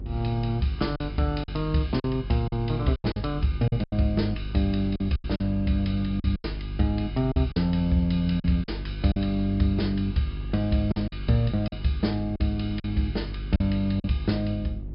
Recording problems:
treble cut off; nothing above 5.5 kHz
electrical hum; 50 Hz, harmonics up to 400 Hz, SNR 9 dB
wind noise; below 140 Hz, SNR 19 dB
packet loss; 8% of the sound replaced, filled with silence

